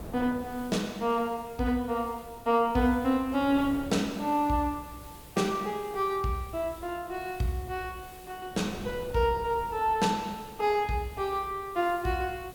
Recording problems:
background hiss; slope 0 dB per octave, SNR 22 dB
wind on the microphone; below 480 Hz, SNR 19 dB

